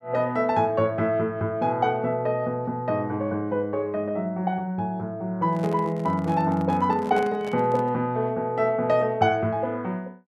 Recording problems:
microphone handling noise; from 5.5 to 8 s; peak -6 dB vs average level

